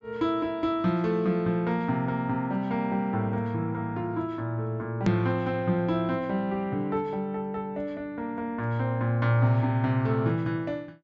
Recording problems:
treble missing; nothing above 8 kHz
edit click; at 5 s

